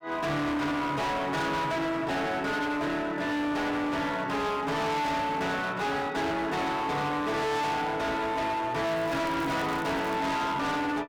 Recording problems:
distorted audio; hard clipping, signal-to-distortion ratio 6 dB
crackling; from 9 to 10 s; loose cable, SNR 20 dB

